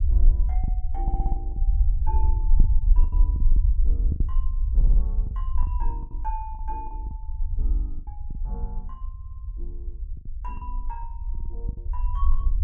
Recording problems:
low-frequency rumble; below 50 Hz, SNR -14 dB
lost packets; 9% of the sound replaced, filled with the last packet
audio stuttering; 4 times, first at 1 s

